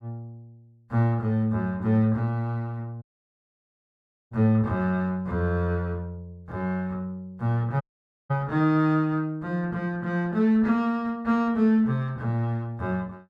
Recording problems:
audio cutting out; at 3 s for 1.5 s and at 8 s

